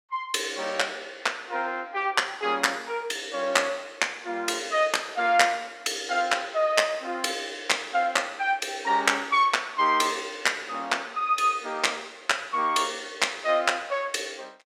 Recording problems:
none

